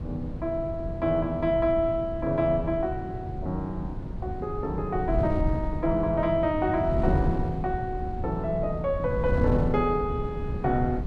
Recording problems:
wind noise; below 170 Hz, SNR 5 dB

